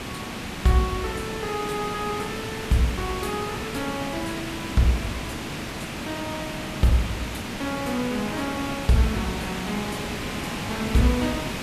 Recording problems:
background hiss; slope -3 dB per octave, SNR 4 dB

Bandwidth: 14 kHz